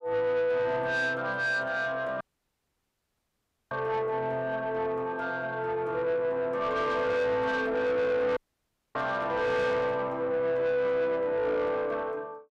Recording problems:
distortion; soft clipping, signal-to-distortion ratio 11 dB
audio cutting out; at 2 s for 1.5 s and at 8.5 s for 0.5 s

